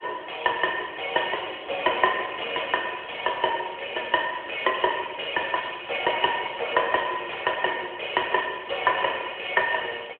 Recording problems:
phone line; 340 Hz to 3.3 kHz, AMR-NB

